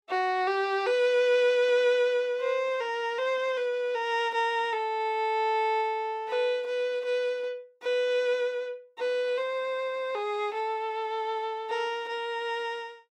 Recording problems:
none

